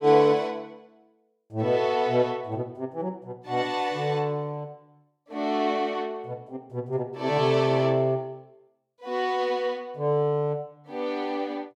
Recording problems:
none

